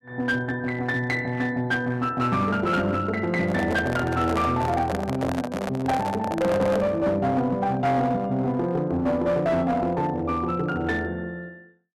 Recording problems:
distorted audio; hard clipping, uneven, signal-to-distortion ratio 11 dB
microphone handling noise; from 3.5 to 7 s; peak +1 dB vs average level

